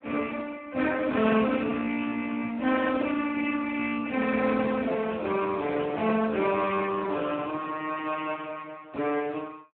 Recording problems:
phone line; 240 Hz to 3.1 kHz, Speex

